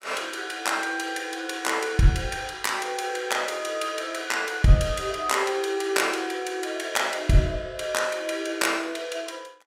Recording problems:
none

